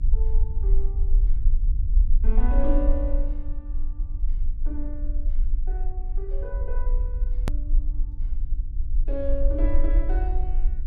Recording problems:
electrical hum; 60 Hz, harmonics up to 300 Hz, SNR 21 dB
rumble; below 42 Hz, strongest tone 20 Hz, SNR -8 dB
hard cut with a click; at 7.5 s

